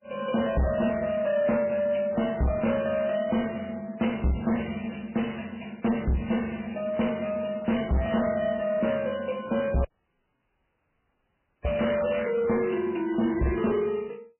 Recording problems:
lossy compression; MP3, log-spectral distance 8 dB, nothing above 3 kHz
distorted audio; soft clipping, signal-to-distortion ratio 6 dB
audio cutting out; at 10 s for 2 s
crackle; at 12 s; loose cable, SNR 10 dB

